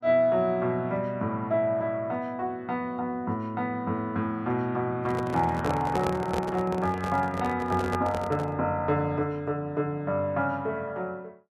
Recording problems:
microphone handling noise; from 5 to 8.5 s; peak +1 dB vs average level

